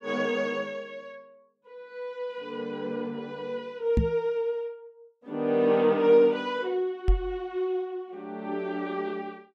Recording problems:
knock on the microphone; at 4 s and at 7 s; peak +7 dB vs average level

